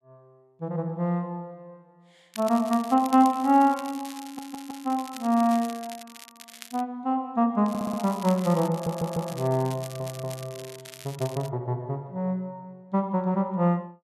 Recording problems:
crackling; from 2.5 to 7 s and from 7.5 to 11 s; loose cable, SNR 18 dB
audio stuttering; 4 times, first at 4 s

